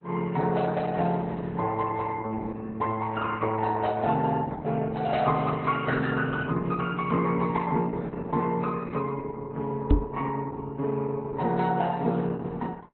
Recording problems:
codec artefacts; AAC, then Opus, log-spectral distance 3 dB, nothing above 4.1 kHz
knock on the microphone; at 10 s; peak +10 dB vs average level

